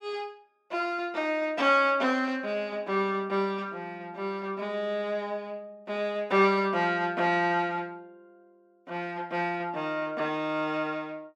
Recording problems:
none

